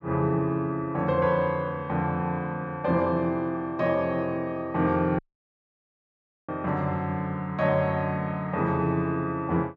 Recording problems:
audio cutting out; at 5 s for 1.5 s

